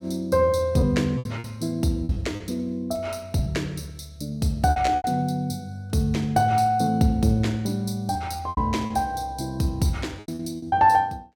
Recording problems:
packet loss; 8% of the sound replaced, filled with repeated pitch periods

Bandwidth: 17 kHz